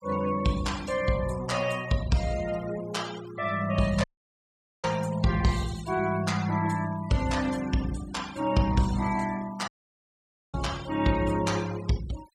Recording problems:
denoising artefacts; signal-to-artefact ratio 15 dB
dropout; at 4 s for 1 s and at 9.5 s for 1 s

